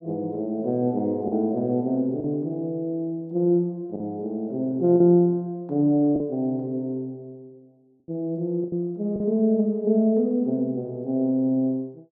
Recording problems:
packet loss; 3% of the sound replaced, filled with the last packet

